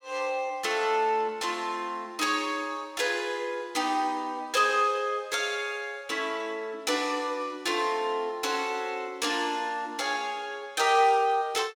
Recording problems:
none

